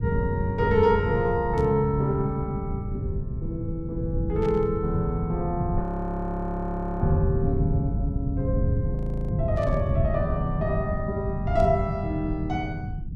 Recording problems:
low-frequency rumble; below 140 Hz, SNR 2 dB
burst of static; 4 times, first at 1.5 s; peak -14 dB vs average level
audio freezing; at 6 s for 1 s and at 9 s

